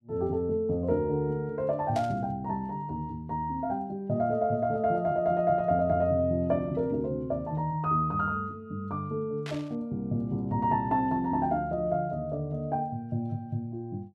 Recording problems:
burst of static; at 2 s and at 9.5 s; peak -8 dB vs average level

